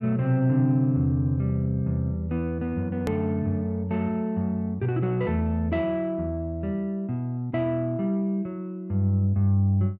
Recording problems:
click at an edit; at 3 s

